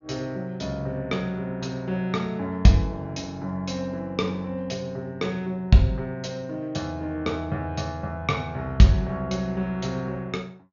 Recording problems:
treble cut off; nothing above 7 kHz

